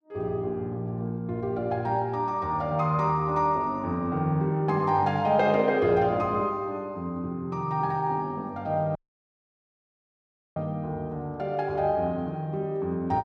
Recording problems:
audio cutting out; at 9 s for 1.5 s

